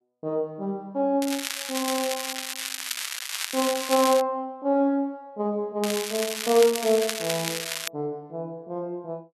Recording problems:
crackling; from 1 to 4 s and from 6 to 8 s; loose cable, SNR 4 dB

